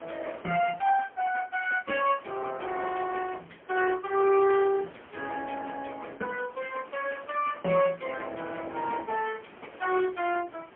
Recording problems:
phone line; 240 Hz to 3.1 kHz, AMR-NB, then MP3
wind noise; below 1.8 kHz, SNR 22 dB

